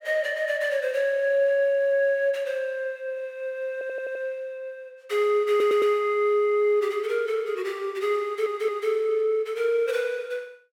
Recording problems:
audio stuttering; at 3.5 s, at 5.5 s and at 8 s

